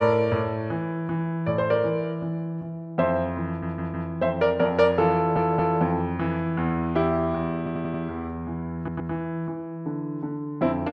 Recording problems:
audio stuttering; 4 times, first at 3.5 s

